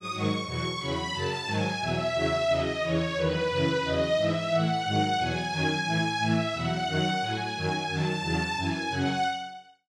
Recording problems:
none

